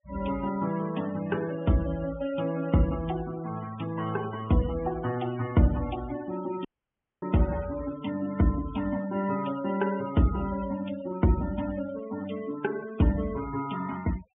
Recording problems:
treble cut off; nothing above 3.3 kHz
noise reduction artefacts; signal-to-artefact ratio 16 dB
dropout; at 6.5 s for 0.5 s

